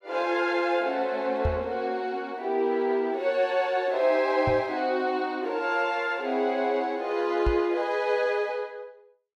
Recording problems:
microphone thump; at 1.5 s, at 4.5 s and at 7.5 s; peak +2 dB vs average level

